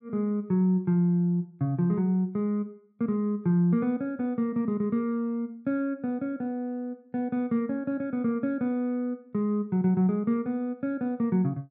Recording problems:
none

